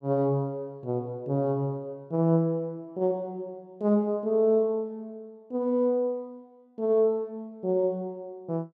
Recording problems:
none

